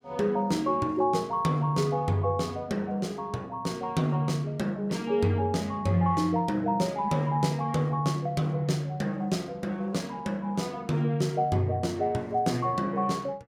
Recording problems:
none

